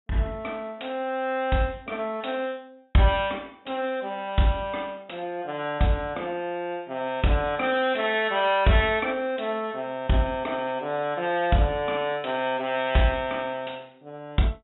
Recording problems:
treble missing; nothing above 3.6 kHz

